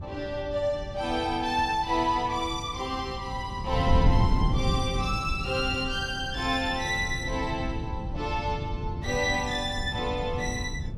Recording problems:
wind noise; below 150 Hz, SNR 4 dB

